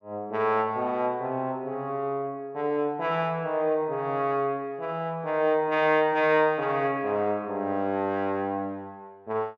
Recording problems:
none

